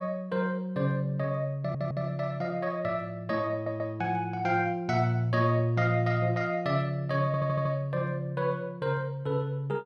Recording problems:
audio stuttering; at 1.5 s, at 3.5 s and at 7.5 s

